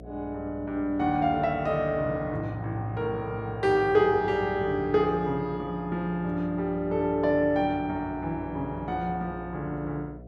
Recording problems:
hum; 60 Hz, harmonics up to 720 Hz, SNR 17 dB

